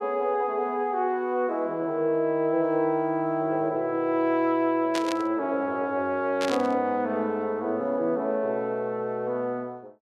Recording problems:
static burst; at 5 s and at 6.5 s; peak -2 dB vs average level

